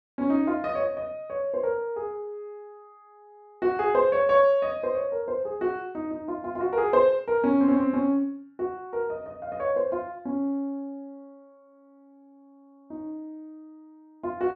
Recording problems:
none

